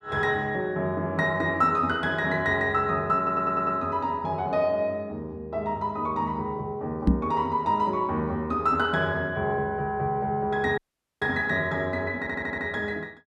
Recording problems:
audio stuttering; at 3 s and at 12 s
knock on the microphone; at 7 s; peak +9 dB vs average level
audio cutting out; at 11 s

